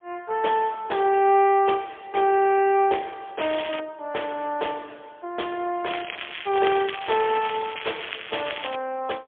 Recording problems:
phone line; 300 Hz to 3.4 kHz, AMR-NB, then MP3
crackling; at 3.5 s and from 6 to 9 s; loose cable, SNR 10 dB

